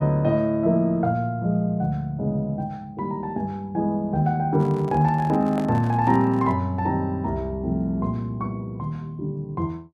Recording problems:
microphone handling noise; from 4.5 to 6.5 s; peak -5 dB vs average level

